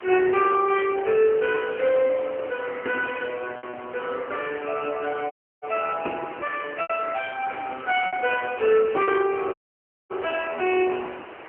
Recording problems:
telephone audio; 280 Hz to 2.9 kHz, AMR-NB
background hiss; SNR 16 dB
packet loss; 3% of the sound replaced, filled with repeated pitch periods
crackle; at 1.5 s and from 7.5 to 9 s; loose cable, SNR 27 dB
audio cutting out; at 5.5 s and at 9.5 s for 0.5 s

